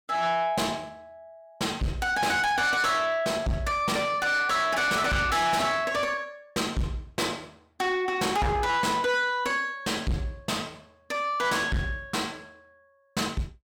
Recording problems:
distorted audio; soft clipping, signal-to-distortion ratio 7 dB

